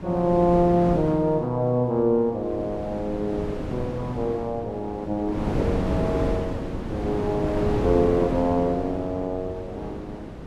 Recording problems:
wind noise; below 430 Hz, SNR 6 dB

